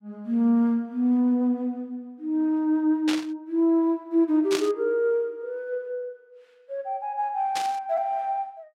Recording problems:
burst of static; at 3 s, at 4.5 s and at 7.5 s; peak -1 dB vs average level

